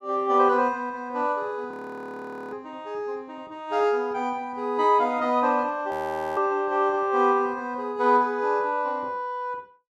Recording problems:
audio freezing; at 1.5 s for 1 s and at 6 s

